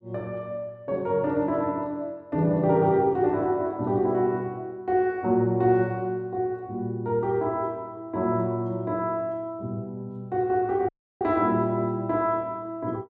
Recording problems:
dropout; at 11 s

